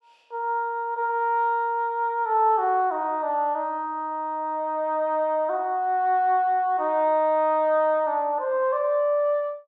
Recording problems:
none

